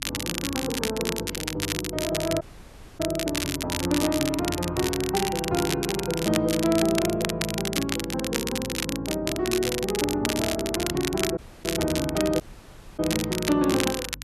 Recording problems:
hum; 50 Hz, harmonics up to 300 Hz, SNR 17 dB
crackling; vinyl, SNR 4 dB
dropout; at 2.5 s for 0.5 s, at 11 s and at 12 s for 0.5 s

